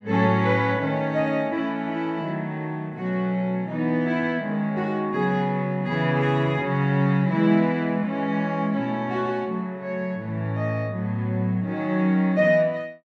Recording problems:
none

